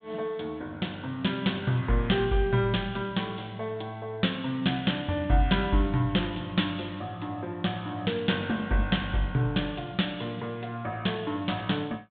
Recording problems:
treble missing; nothing above 4 kHz

